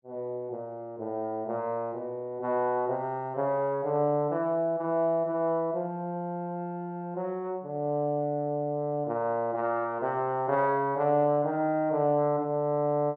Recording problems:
none

